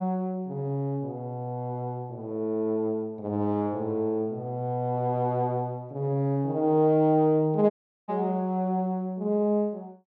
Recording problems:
dropout; at 7.5 s

